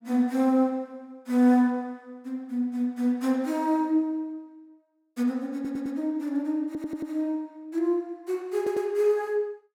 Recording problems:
stutter; at 5.5 s, at 6.5 s and at 8.5 s

